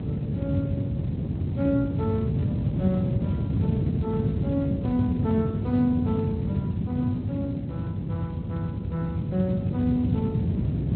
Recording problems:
treble missing; nothing above 5.5 kHz
lossy codec; Speex, log-spectral distance 2 dB
hum; 50 Hz, harmonics up to 550 Hz, SNR 10 dB
wind on the microphone; below 210 Hz, SNR -2 dB

